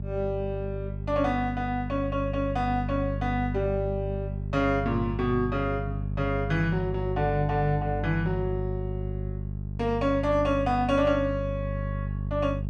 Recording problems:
mains hum; 50 Hz, harmonics up to 400 Hz, SNR 4 dB

